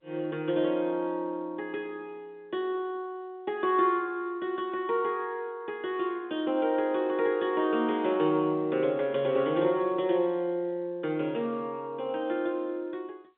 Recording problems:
telephone audio; 190 Hz to 3.6 kHz, G.711

